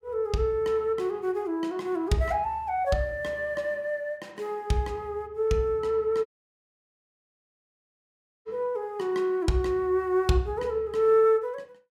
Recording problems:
audio cutting out; at 6.5 s for 2 s

